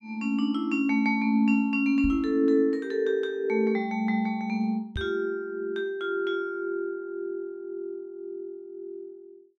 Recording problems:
microphone thump; at 2 s and at 5 s; peak -3 dB vs average level

